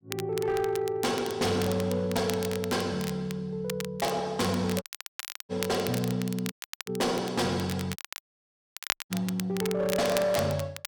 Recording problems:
distortion; hard clipping, signal-to-distortion ratio 10 dB
crackling; vinyl, SNR 10 dB
audio cutting out; at 5 s for 0.5 s, at 6.5 s and at 8 s for 1 s

